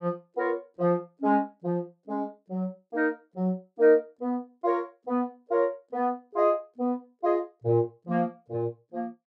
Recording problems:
none

